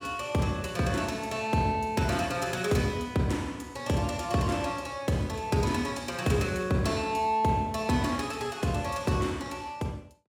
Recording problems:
none

